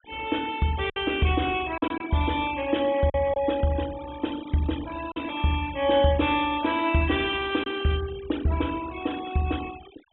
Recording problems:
low-pass filter; nothing above 3.6 kHz
noise reduction artefacts; signal-to-artefact ratio 17 dB
lost packets; 3% of the sound replaced, filled with silence

